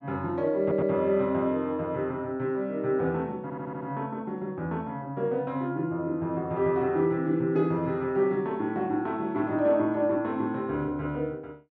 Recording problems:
audio stuttering; at 0.5 s and at 3.5 s

